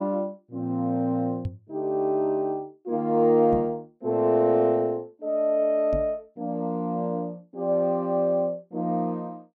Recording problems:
knock on the microphone; at 1.5 s, at 3.5 s and at 6 s; peak -2 dB vs average level

